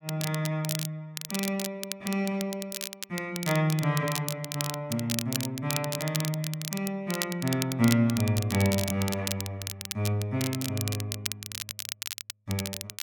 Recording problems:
crackle; vinyl, SNR 5 dB

